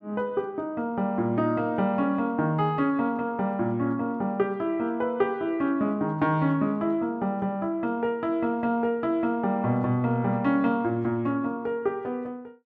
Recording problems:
none

